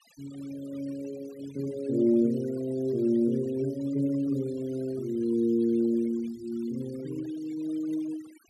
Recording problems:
noise reduction artefacts; signal-to-artefact ratio 23 dB

